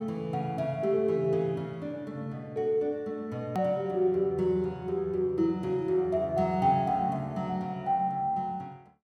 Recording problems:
click at an edit; at 3.5 s

